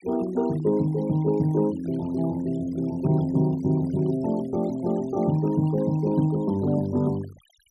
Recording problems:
denoising artefacts; signal-to-artefact ratio 24 dB

